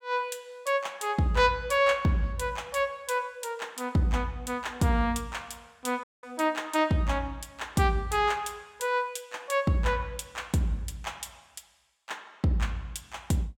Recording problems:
audio cutting out; at 6 s

